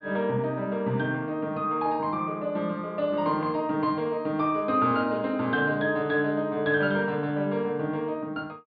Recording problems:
low-pass filter; nothing above 4.7 kHz

